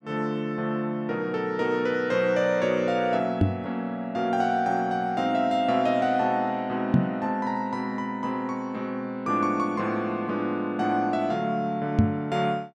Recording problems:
microphone thump; at 3.5 s, at 7 s and at 12 s; peak +9 dB vs average level

